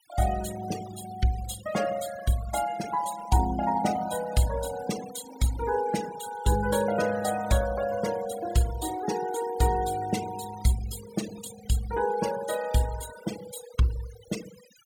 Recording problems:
denoising artefacts; signal-to-artefact ratio 12 dB

